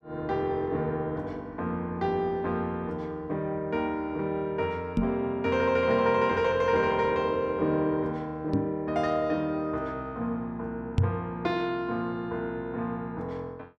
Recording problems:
microphone thump; at 5 s, at 8.5 s and at 11 s; peak +8 dB vs average level

